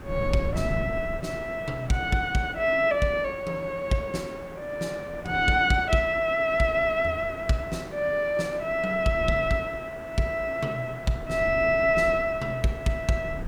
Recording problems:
background hiss; SNR 18 dB
wind noise; below 170 Hz, SNR 13 dB

